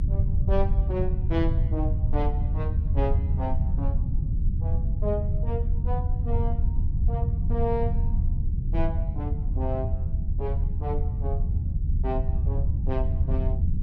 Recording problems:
low-frequency rumble; below 88 Hz, SNR -7 dB

